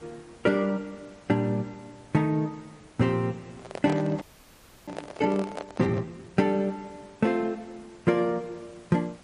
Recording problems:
lossy codec; MP3, log-spectral distance 5 dB
background hiss; slope -4 dB per octave, SNR 25 dB
handling noise; from 3.5 to 6 s; peak -4 dB vs average level
frozen audio; at 4 s for 0.5 s

